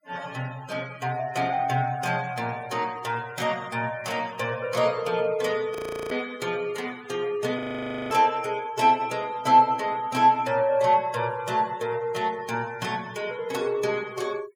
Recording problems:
noise reduction artefacts; signal-to-artefact ratio 20 dB
frozen audio; at 6 s and at 7.5 s for 0.5 s

